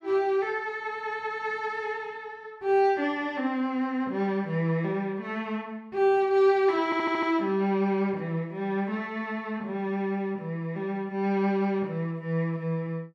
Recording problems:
audio stuttering; at 7 s

